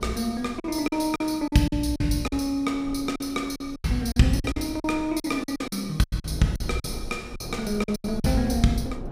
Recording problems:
mains hum; 60 Hz, harmonics up to 960 Hz, SNR 25 dB
wind noise; below 300 Hz, SNR 15 dB
lost packets; 13% of the sound replaced, filled with silence

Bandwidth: 15.5 kHz